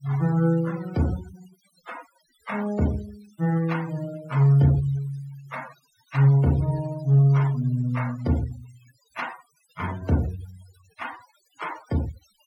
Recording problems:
denoising artefacts; signal-to-artefact ratio 18 dB

